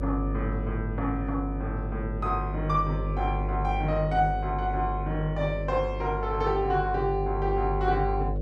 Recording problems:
hum; 50 Hz, harmonics up to 600 Hz, SNR 3 dB

